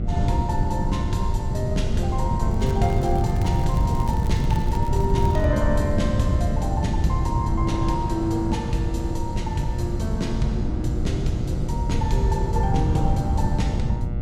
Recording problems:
hum; 60 Hz, harmonics up to 2.2 kHz, SNR 13 dB
wind on the microphone; below 130 Hz, SNR -2 dB
crackling; from 2.5 to 5.5 s; loose cable, SNR 20 dB

